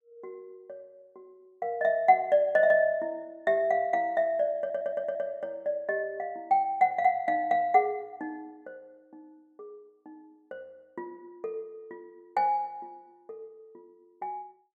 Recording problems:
audio stuttering; at 4.5 s

